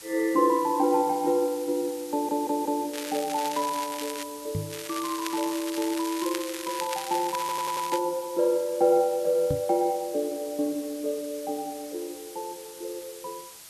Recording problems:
background hiss; slope +1 dB per octave, SNR 15 dB
stutter; at 2 s and at 7.5 s
crackle; from 3 to 4 s and from 4.5 to 8 s; loose cable, SNR 10 dB
microphone bump; at 4.5 s and at 9.5 s; peak +1 dB vs average level

